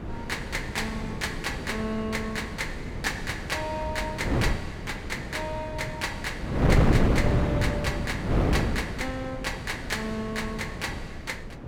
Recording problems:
wind on the microphone; below 350 Hz, SNR -2 dB

